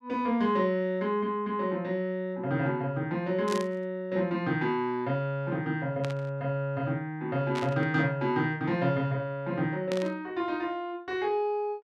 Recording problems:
burst of static; 4 times, first at 3.5 s; peak -4 dB vs average level

